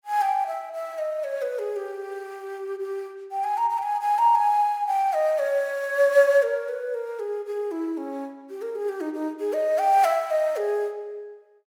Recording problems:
none

